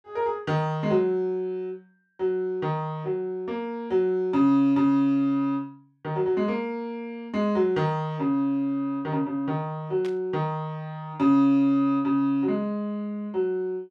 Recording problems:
burst of static; at 10 s; peak -13 dB vs average level

